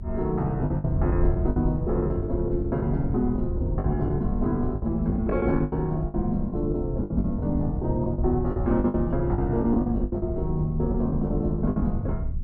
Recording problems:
low-frequency rumble; below 100 Hz, SNR 8 dB
wind noise; below 88 Hz, SNR 7 dB
packet loss; 13% of the sound replaced, filled with the last packet

